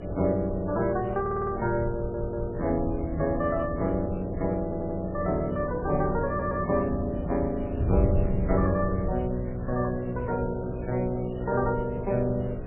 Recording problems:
lossy codec; MP3, then MP3, log-spectral distance 3 dB
electrical hum; 60 Hz, harmonics up to 720 Hz, SNR 13 dB
hiss; SNR 23 dB
wind on the microphone; below 110 Hz, SNR 8 dB
audio stuttering; 4 times, first at 1 s

